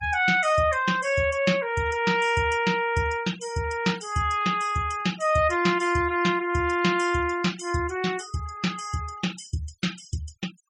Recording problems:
noise reduction artefacts; signal-to-artefact ratio 19 dB

